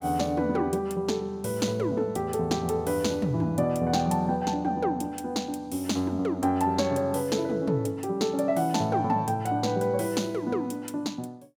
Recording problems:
none

